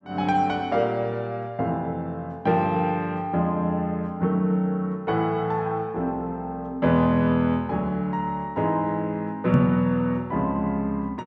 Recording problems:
knock on the microphone; at 9.5 s; peak +7 dB vs average level

